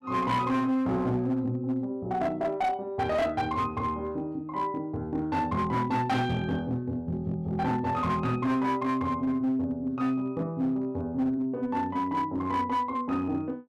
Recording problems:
distortion; hard clipping, uneven, signal-to-distortion ratio 12 dB

